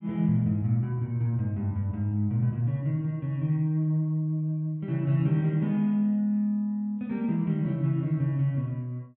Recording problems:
treble cut off; nothing above 4 kHz

